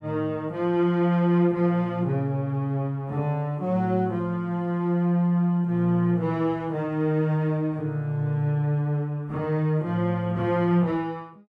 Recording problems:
none

